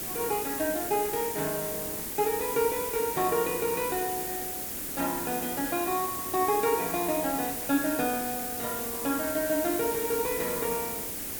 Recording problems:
background hiss; SNR 2 dB

